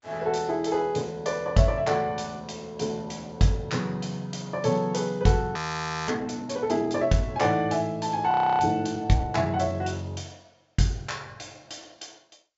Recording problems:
treble missing; nothing above 7.3 kHz
codec artefacts; G.722, log-spectral distance 5 dB
frozen audio; at 5.5 s for 0.5 s and at 8.5 s

